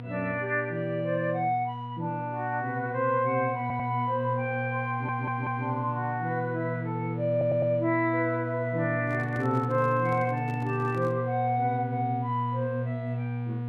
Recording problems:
hum; 60 Hz, harmonics up to 1.2 kHz, SNR 5 dB
stutter; at 3.5 s, at 5 s and at 7.5 s
microphone handling noise; from 9 to 11 s; peak -8 dB vs average level

